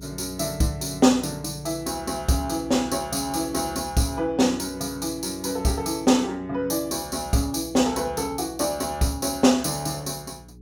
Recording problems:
electrical hum; 60 Hz, harmonics up to 420 Hz, SNR 21 dB

